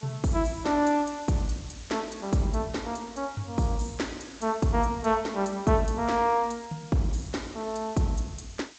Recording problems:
codec artefacts; G.722, log-spectral distance 9 dB, nothing above 7.6 kHz
hiss; slope +2 dB per octave, SNR 20 dB

